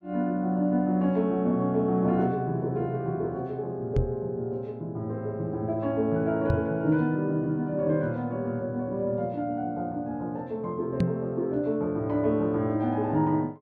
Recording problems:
microphone bump; at 4 s, at 6.5 s and at 11 s; peak +6 dB vs average level

